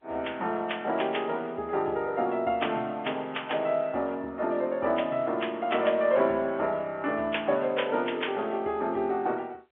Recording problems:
telephone audio; 300 Hz to 3.4 kHz, G.711

